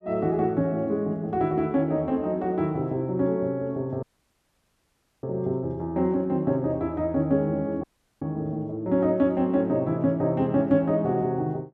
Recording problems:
dropout; at 4 s for 1 s and at 8 s

